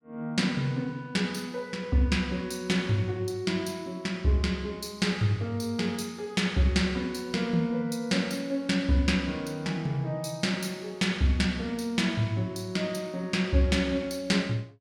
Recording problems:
none

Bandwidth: 17.5 kHz